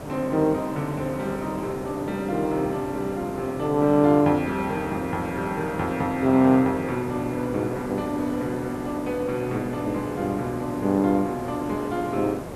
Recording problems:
background hiss; SNR 11 dB

